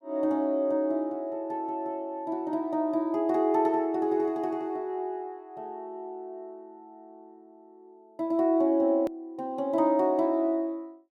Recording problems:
hard cut with a click; at 9 s

